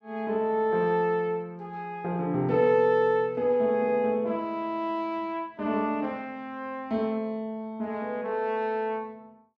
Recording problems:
none

